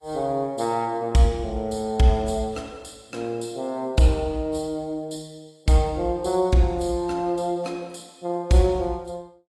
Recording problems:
codec artefacts; AAC, log-spectral distance 2 dB, nothing above 11.3 kHz

